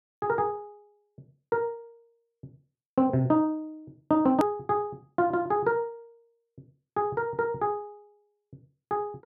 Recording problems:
edit click; at 4.5 s

